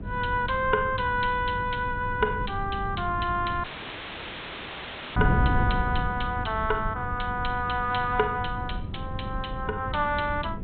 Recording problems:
treble missing; nothing above 4 kHz
lossy compression; MP2, log-spectral distance 3 dB
hum; 50 Hz, harmonics up to 500 Hz, SNR 16 dB
wind on the microphone; below 160 Hz, SNR 6 dB
dropout; at 3.5 s for 1.5 s

